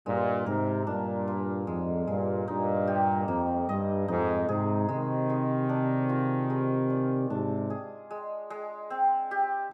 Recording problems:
none

